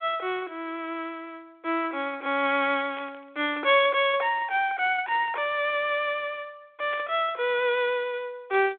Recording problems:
telephone audio; 320 Hz to 3.5 kHz, G.726
static burst; at 3 s and at 7 s; peak -11 dB vs average level

